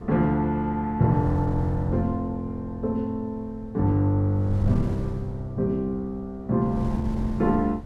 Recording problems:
wind noise; below 120 Hz, SNR 10 dB

